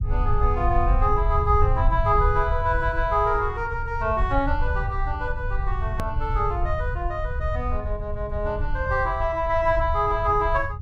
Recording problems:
low-frequency rumble; below 78 Hz, SNR 3 dB
edit click; at 6 s

